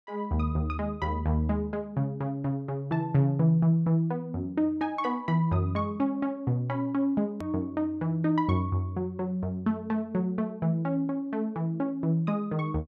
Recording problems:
edit click; at 7.5 s

